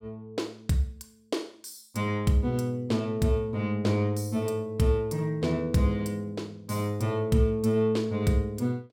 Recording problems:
none

